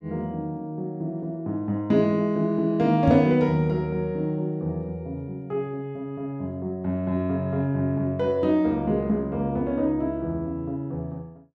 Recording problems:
microphone bump; at 3 s; peak +4 dB vs average level

